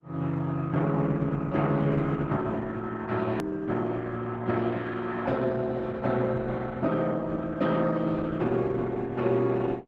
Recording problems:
codec artefacts; Opus, log-spectral distance 3 dB, nothing above 13.1 kHz
hard cut with a click; at 3.5 s

